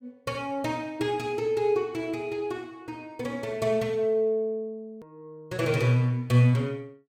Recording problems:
click at an edit; at 5 s

